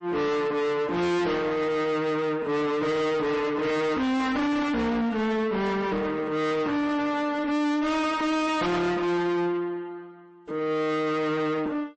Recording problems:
lossy codec; MP3, log-spectral distance 2 dB, nothing above 8 kHz
distorted audio; soft clipping, signal-to-distortion ratio 6 dB

